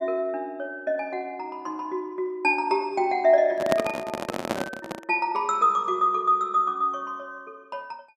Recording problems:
handling noise; from 3.5 to 5 s; peak +4 dB vs average level

